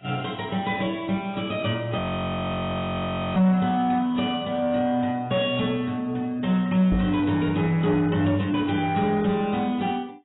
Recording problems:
lossy codec; AAC, log-spectral distance 3 dB, nothing above 3.4 kHz
distorted audio; soft clipping, signal-to-distortion ratio 12 dB
frozen audio; at 2 s for 1.5 s
microphone bump; at 7 s; peak +2 dB vs average level

